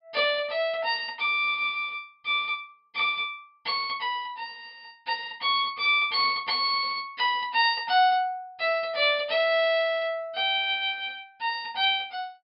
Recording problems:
treble missing; nothing above 5.5 kHz

